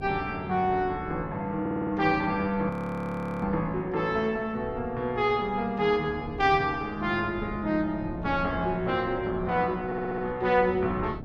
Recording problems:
electrical hum; 60 Hz, harmonics up to 720 Hz, SNR 22 dB
wind on the microphone; below 250 Hz, SNR 15 dB
stutter; at 1.5 s and at 10 s
audio freezing; at 2.5 s for 0.5 s

